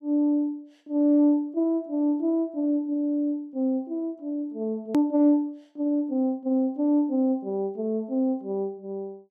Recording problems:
edit click; at 5 s

